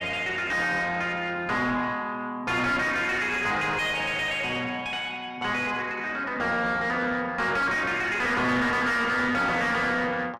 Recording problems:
distorted audio; soft clipping, signal-to-distortion ratio 6 dB

